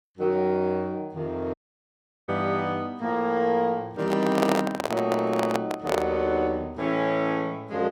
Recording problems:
audio cutting out; at 1.5 s for 0.5 s
handling noise; from 4 to 6 s; peak +5 dB vs average level

